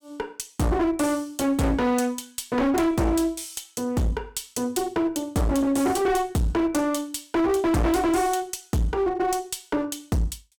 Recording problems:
distortion; hard clipping, uneven, signal-to-distortion ratio 6 dB

